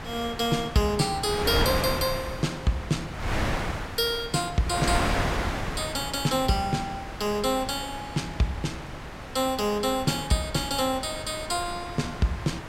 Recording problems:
wind noise; below 1.6 kHz, SNR 5 dB

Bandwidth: 16 kHz